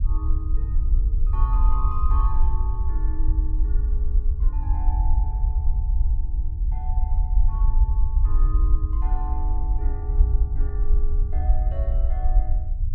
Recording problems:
low-frequency rumble; below 56 Hz, SNR -15 dB

